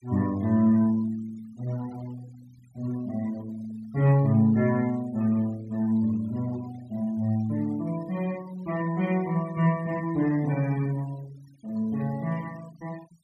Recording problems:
denoising artefacts; signal-to-artefact ratio 24 dB

